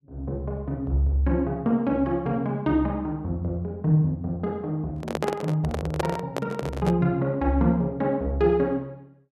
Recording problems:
microphone handling noise; from 5 to 7 s; peak +3 dB vs average level

